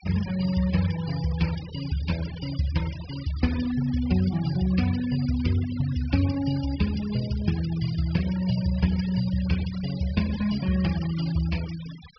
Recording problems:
treble missing; nothing above 5.5 kHz
noise reduction artefacts; signal-to-artefact ratio 15 dB

